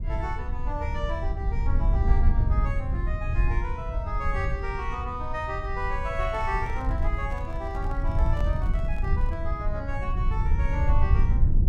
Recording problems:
low-frequency rumble; below 74 Hz, SNR -5 dB
microphone handling noise; from 6 to 9.5 s; peak -5 dB vs average level

